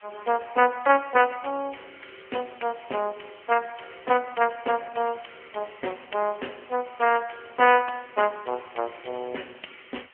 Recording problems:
telephone audio; 320 Hz to 3.1 kHz, AMR-NB
background hiss; SNR 27 dB

